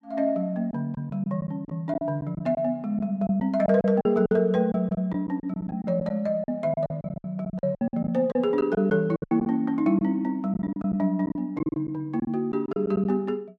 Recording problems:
lost packets; 12% of the sound replaced, filled with silence

